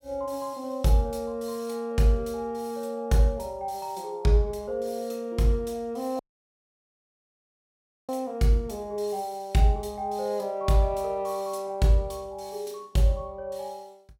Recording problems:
dropout; at 6 s for 2 s

